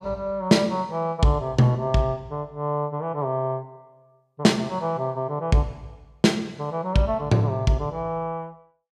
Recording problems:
none

